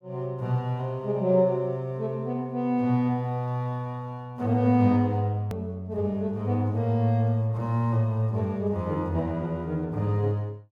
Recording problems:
click at an edit; at 5.5 s

